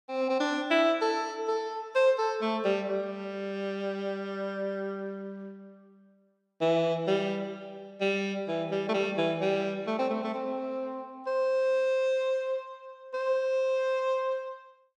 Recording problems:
none

